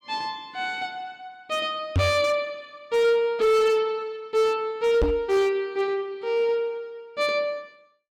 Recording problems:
distortion; hard clipping, signal-to-distortion ratio 11 dB
knock on the microphone; at 2 s and at 5 s; peak +5 dB vs average level

